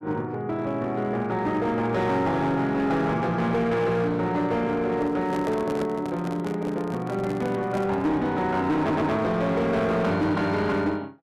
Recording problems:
distortion; hard clipping, uneven, signal-to-distortion ratio 11 dB
microphone handling noise; from 5 to 8 s; peak -4 dB vs average level
stutter; at 9 s

